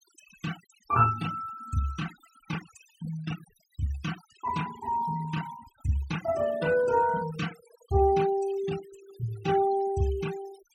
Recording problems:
noise reduction artefacts; signal-to-artefact ratio 15 dB

